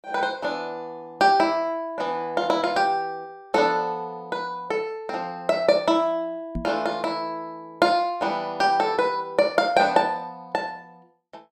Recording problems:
microphone thump; at 6.5 s; peak -3 dB vs average level

